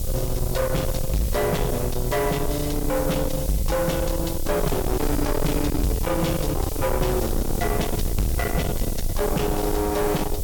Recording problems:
distorted audio; soft clipping, signal-to-distortion ratio 6 dB
mains hum; 60 Hz, harmonics up to 660 Hz, SNR 17 dB
background hiss; SNR 10 dB
rumble; below 290 Hz, SNR 4 dB

